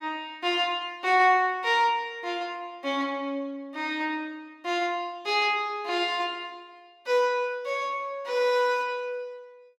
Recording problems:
none

